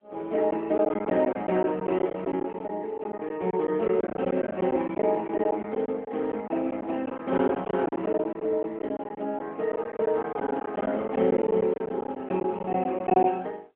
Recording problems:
phone line; 260 Hz to 3.1 kHz, AMR-NB
lost packets; 11% of the sound replaced, filled with silence

